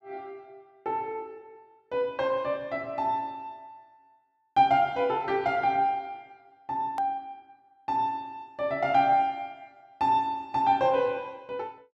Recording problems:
hard cut with a click; at 7 s

